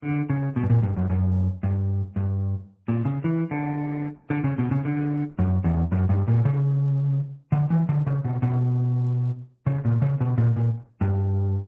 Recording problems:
codec artefacts; MP3, then Opus, log-spectral distance 2 dB

